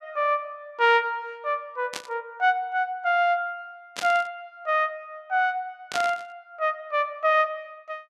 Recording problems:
burst of static; at 2 s, at 4 s and at 6 s; peak -1 dB vs average level

